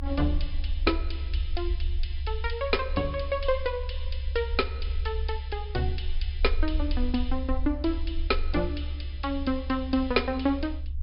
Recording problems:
treble missing; nothing above 5.5 kHz
rumble; below 70 Hz, SNR 3 dB

